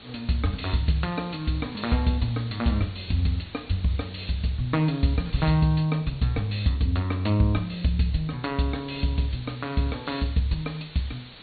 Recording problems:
treble missing; nothing above 4.5 kHz
hiss; SNR 20 dB
wind noise; below 460 Hz, SNR 26 dB

